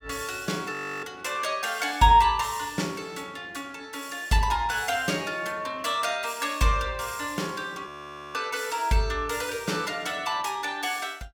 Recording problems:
audio freezing; at 0.5 s and at 8 s

